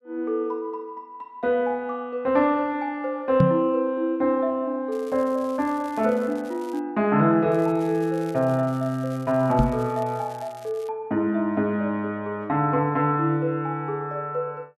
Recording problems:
microphone thump; at 3.5 s and at 9.5 s; peak +7 dB vs average level
crackle; from 5 to 7 s and from 7.5 to 11 s; loose cable, SNR 26 dB

